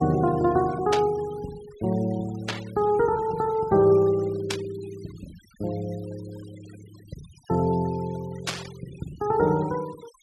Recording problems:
denoising artefacts; signal-to-artefact ratio 22 dB
static burst; 4 times, first at 1 s; peak +1 dB vs average level

